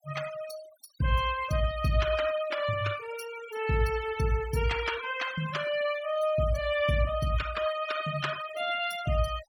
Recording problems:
denoising artefacts; signal-to-artefact ratio 13 dB

